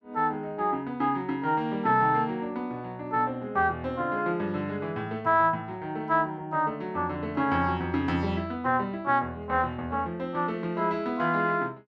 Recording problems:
none

